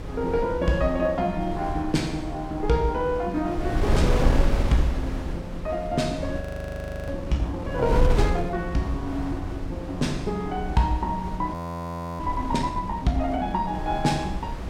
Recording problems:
hum; 60 Hz, harmonics up to 720 Hz, SNR 22 dB
wind noise; below 150 Hz, SNR 4 dB
frozen audio; at 6.5 s for 0.5 s and at 12 s for 0.5 s

